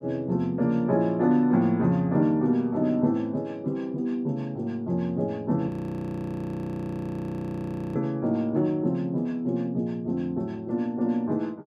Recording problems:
audio freezing; at 5.5 s for 2.5 s

